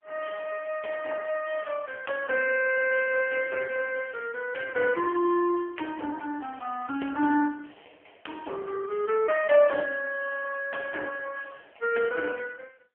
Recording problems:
phone line; 260 Hz to 3.1 kHz, AMR-NB

